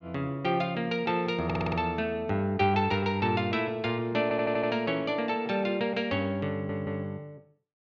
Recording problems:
stutter; at 1.5 s, at 4 s and at 6.5 s

